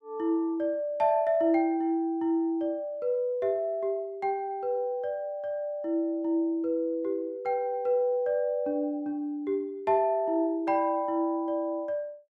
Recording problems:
none

